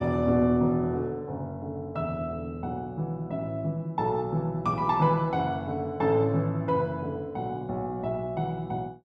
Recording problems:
none

